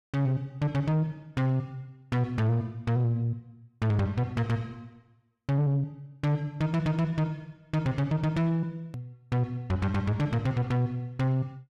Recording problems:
distorted audio; soft clipping, signal-to-distortion ratio 10 dB
click at an edit; at 9 s

